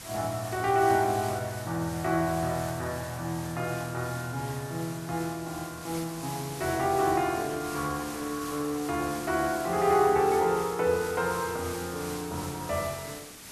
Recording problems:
background hiss; slope -1 dB per octave, SNR 12 dB

